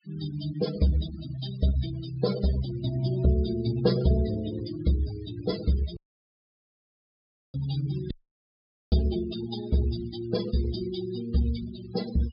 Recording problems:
low-pass filter; nothing above 5.5 kHz
noise reduction artefacts; signal-to-artefact ratio 12 dB
dropout; at 6 s for 1.5 s and at 8 s for 1 s

